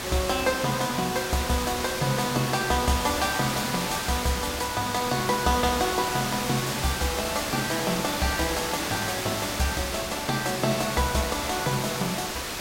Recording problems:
background hiss; slope -2 dB per octave, SNR 3 dB

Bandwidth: 16 kHz